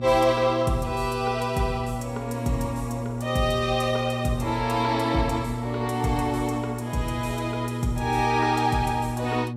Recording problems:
hum; 60 Hz, harmonics up to 840 Hz, SNR 6 dB

